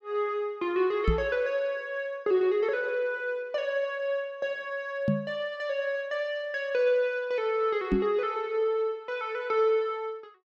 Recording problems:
microphone thump; at 1 s, at 5 s and at 8 s; peak +6 dB vs average level

